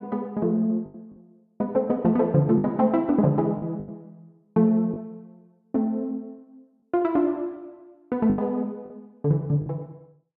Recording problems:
lost packets; 6% of the sound replaced, filled with the last packet

